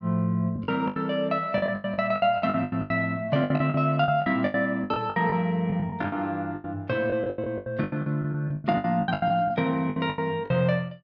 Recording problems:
packet loss; 20% of the sound replaced, filled with the last packet

